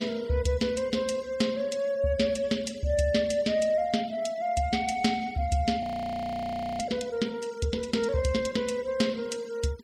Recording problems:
noise reduction artefacts; signal-to-artefact ratio 21 dB
audio freezing; at 6 s for 1 s

